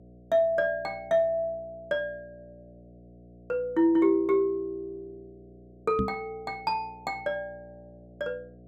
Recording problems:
hum; 60 Hz, harmonics up to 720 Hz, SNR 24 dB
microphone thump; at 6 s; peak +2 dB vs average level

